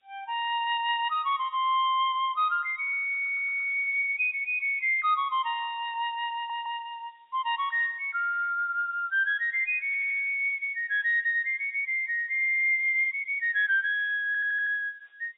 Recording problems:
treble cut off; nothing above 4 kHz
hiss; SNR 46 dB
audio stuttering; 4 times, first at 3 s

